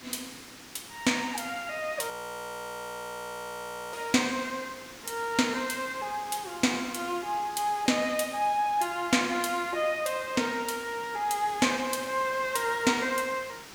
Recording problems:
hiss; SNR 16 dB
frozen audio; at 2 s for 2 s

